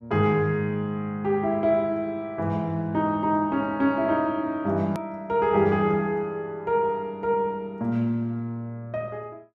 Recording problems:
edit click; at 5 s

